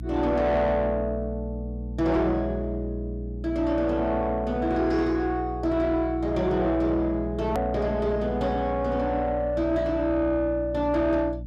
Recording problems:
distorted audio; soft clipping, signal-to-distortion ratio 11 dB
hum; 60 Hz, harmonics up to 300 Hz, SNR 10 dB
hard cut with a click; at 7.5 s

